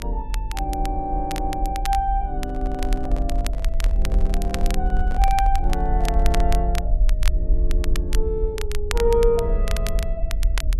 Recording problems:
electrical hum; 50 Hz, harmonics up to 600 Hz, SNR 16 dB
rumble; below 48 Hz, SNR -1 dB
crackling; vinyl, SNR 10 dB
microphone handling noise; from 2.5 to 6.5 s; peak -7 dB vs average level

